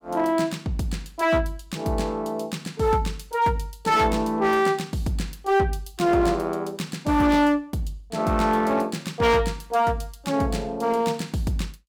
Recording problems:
distorted audio; hard clipping, signal-to-distortion ratio 10 dB

